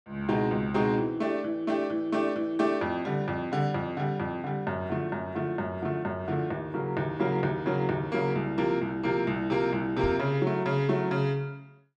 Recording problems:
microphone thump; at 10 s; peak -2 dB vs average level

